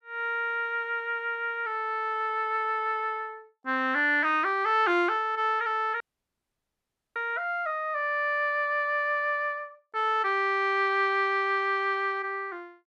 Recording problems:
dropout; at 6 s for 1 s

